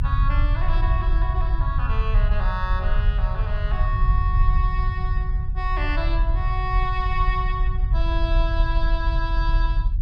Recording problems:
rumble; below 60 Hz, strongest tone 34 Hz, SNR -6 dB

